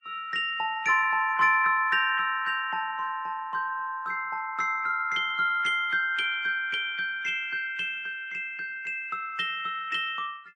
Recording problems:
codec artefacts; MP3, then Vorbis, log-spectral distance 2 dB, nothing above 8.7 kHz

